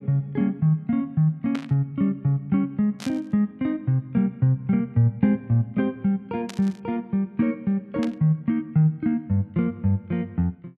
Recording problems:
burst of static; 4 times, first at 1.5 s; peak -8 dB vs average level

